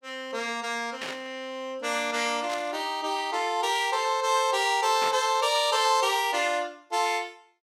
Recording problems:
burst of static; at 1 s, at 2.5 s and at 5 s; peak -5 dB vs average level

